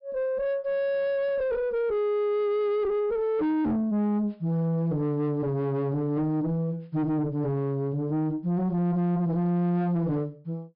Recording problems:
treble missing; nothing above 5.5 kHz
distortion; soft clipping, signal-to-distortion ratio 6 dB

